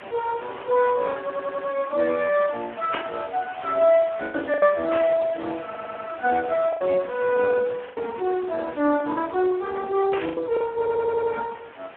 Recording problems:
phone line; 220 Hz to 2 kHz, Speex
hiss; SNR 18 dB
lost packets; 5% of the sound replaced, filled with the last packet
audio stuttering; at 1 s, at 5.5 s and at 11 s
static burst; at 3 s, at 5 s and at 10 s; peak 0 dB vs average level

